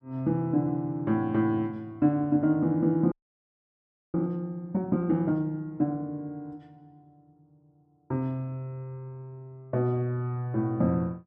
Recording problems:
frozen audio; at 3 s for 1 s

